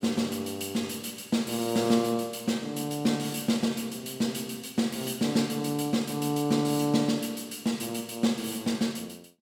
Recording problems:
none

